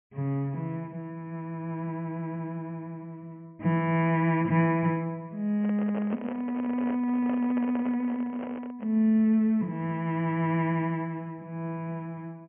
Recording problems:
treble missing; nothing above 3.1 kHz
handling noise; from 5.5 to 9 s; peak -6 dB vs average level

